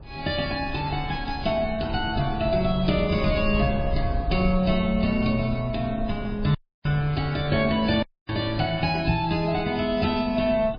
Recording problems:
codec artefacts; MP3, log-spectral distance 5 dB, nothing above 4.1 kHz
low-frequency rumble; below 110 Hz, SNR 10 dB
audio cutting out; at 6.5 s and at 8 s
microphone thump; at 9 s; peak +3 dB vs average level

